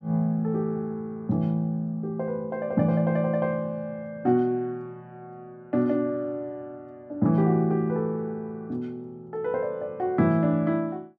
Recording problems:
none

